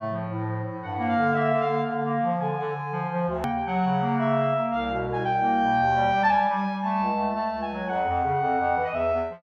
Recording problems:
hard cut with a click; at 3.5 s

